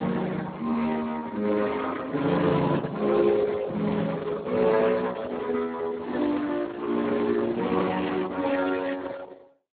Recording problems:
codec artefacts; Opus, then Speex, log-spectral distance 5 dB, nothing above 4.2 kHz

